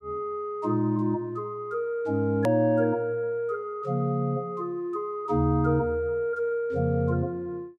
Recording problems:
hard cut with a click; at 2.5 s

